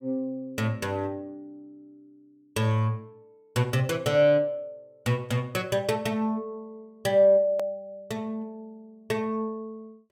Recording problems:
edit click; at 7.5 s

